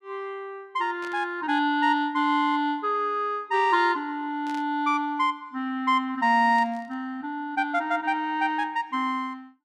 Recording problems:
static burst; at 1 s, at 4.5 s and at 6.5 s; peak -14 dB vs average level

